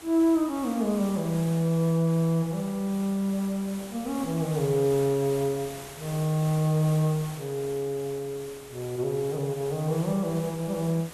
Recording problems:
hiss; slope -3 dB per octave, SNR 16 dB

